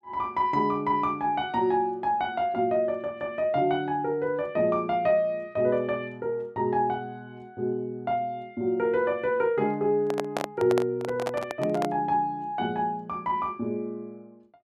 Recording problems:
microphone handling noise; from 10 to 12 s; peak +2 dB vs average level

